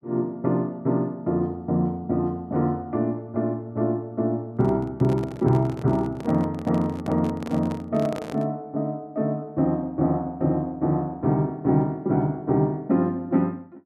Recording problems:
handling noise; from 4.5 to 8.5 s; peak -6 dB vs average level

